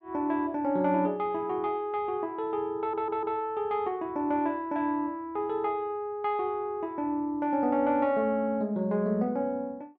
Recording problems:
audio stuttering; at 3 s

